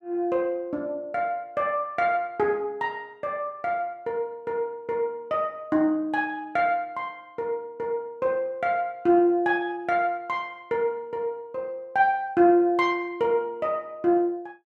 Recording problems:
none

